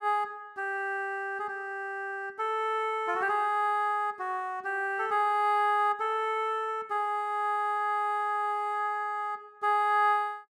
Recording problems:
none

